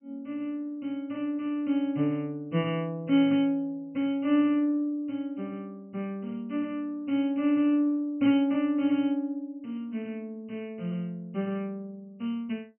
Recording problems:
treble cut off; nothing above 3.1 kHz

